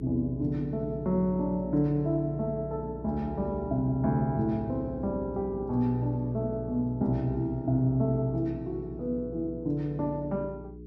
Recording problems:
mains hum; 60 Hz, harmonics up to 420 Hz, SNR 12 dB

